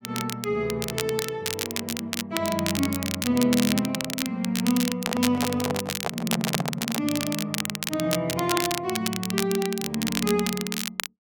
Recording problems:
crackle; vinyl, SNR 3 dB
handling noise; from 5 to 7 s; peak +3 dB vs average level

